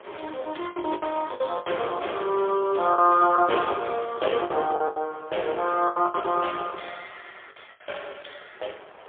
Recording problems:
phone line; 320 Hz to 3.4 kHz, AMR-NB, then MP3
wind noise; below 1.7 kHz, SNR 25 dB
packet loss; 12% of the sound replaced, filled with the last packet

